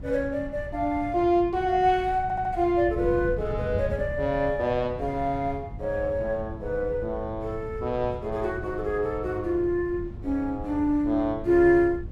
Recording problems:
wind on the microphone; below 130 Hz, SNR 12 dB
audio stuttering; at 2 s

